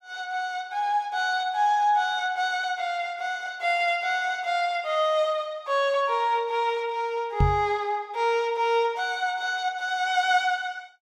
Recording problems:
knock on the microphone; at 7.5 s; peak +6 dB vs average level

